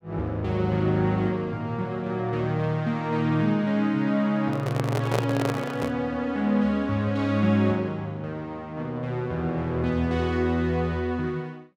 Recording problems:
microphone handling noise; from 4.5 to 6 s; peak +4 dB vs average level

